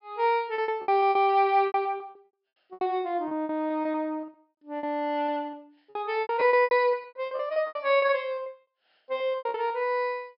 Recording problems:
treble cut off; nothing above 5.3 kHz
packet loss; 19% of the sound replaced, filled with repeated pitch periods

